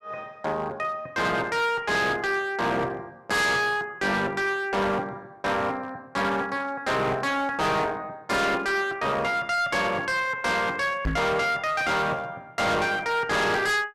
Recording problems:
distorted audio; hard clipping, uneven, signal-to-distortion ratio 6 dB
microphone bump; at 11 s; peak +1 dB vs average level

